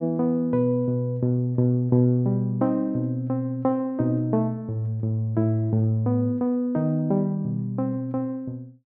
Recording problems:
none

